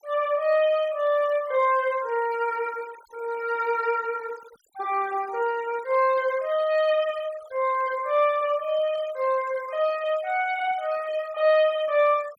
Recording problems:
denoising artefacts; signal-to-artefact ratio 22 dB

